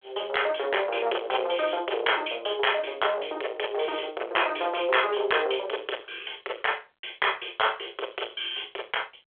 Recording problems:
phone line; 340 Hz to 3.4 kHz, G.726
distortion; soft clipping, signal-to-distortion ratio 12 dB

